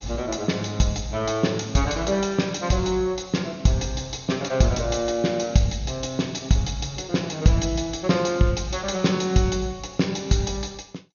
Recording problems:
codec artefacts; MP2, log-spectral distance 5 dB, nothing above 6.7 kHz

